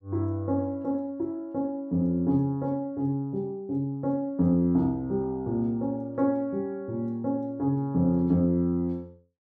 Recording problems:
none

